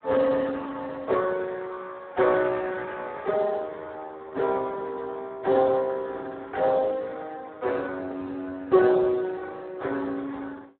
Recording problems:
phone line; 300 Hz to 2.5 kHz, Speex

